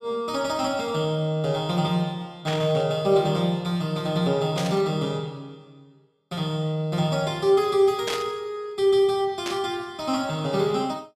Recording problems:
static burst; 4 times, first at 2.5 s; peak -2 dB vs average level

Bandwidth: 14.5 kHz